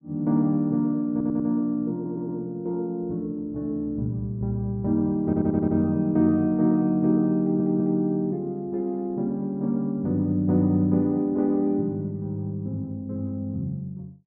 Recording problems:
stutter; 4 times, first at 1 s

